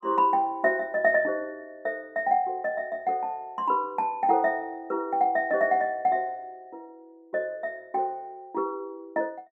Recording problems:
none

